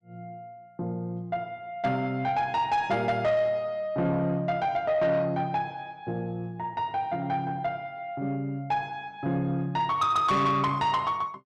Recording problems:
distorted audio; soft clipping, signal-to-distortion ratio 12 dB

